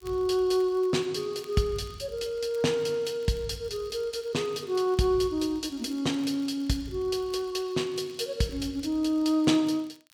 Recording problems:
crackle; vinyl, SNR 29 dB

